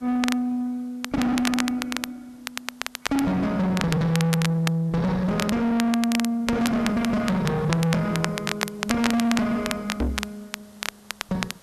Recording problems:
distorted audio; soft clipping, signal-to-distortion ratio 7 dB
background hiss; slope -3 dB per octave, SNR 30 dB
crackling; vinyl, SNR 8 dB
microphone thump; at 10 s; peak +2 dB vs average level

